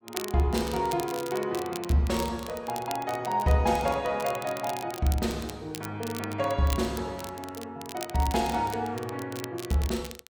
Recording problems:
crackling; vinyl, SNR 13 dB

